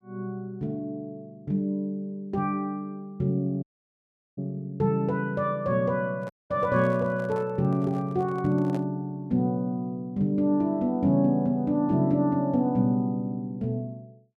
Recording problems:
audio cutting out; at 3.5 s for 0.5 s and at 6.5 s
microphone handling noise; from 6 to 9 s; peak -9 dB vs average level

